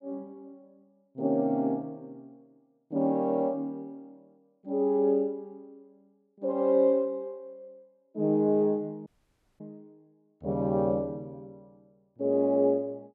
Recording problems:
dropout; at 9 s for 0.5 s

